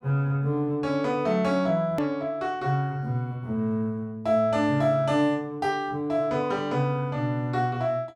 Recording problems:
edit click; at 2 s

